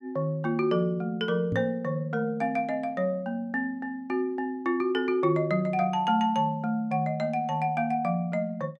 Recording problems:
microphone bump; at 1.5 s; peak -1 dB vs average level

